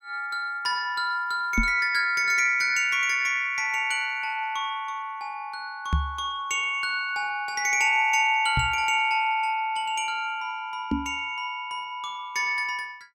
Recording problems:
microphone bump; 4 times, first at 1.5 s; peak +3 dB vs average level

